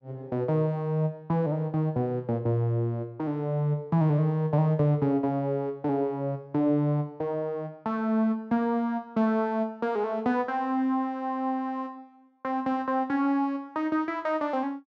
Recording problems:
none

